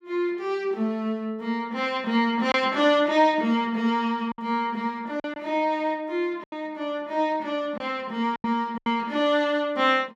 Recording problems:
packet loss; 4% of the sound replaced, filled with silence

